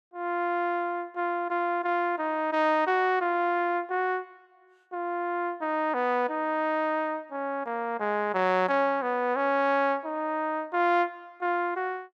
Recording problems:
none

